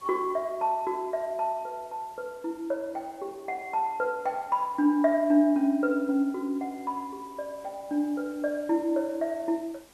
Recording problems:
hiss; SNR 27 dB

